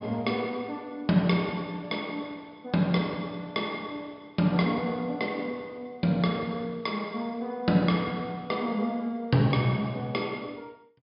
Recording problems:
treble missing; nothing above 5.5 kHz

